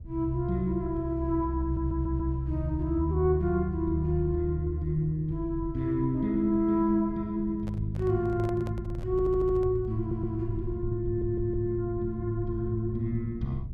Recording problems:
low-frequency rumble; below 110 Hz, SNR 13 dB
audio stuttering; 4 times, first at 1.5 s
microphone handling noise; from 7.5 to 10 s; peak -10 dB vs average level

